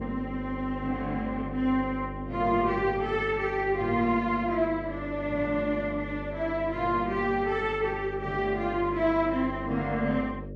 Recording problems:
mains hum; 50 Hz, harmonics up to 600 Hz, SNR 11 dB

